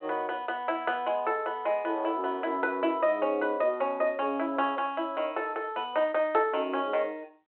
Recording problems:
phone line; 240 Hz to 3.3 kHz, G.726

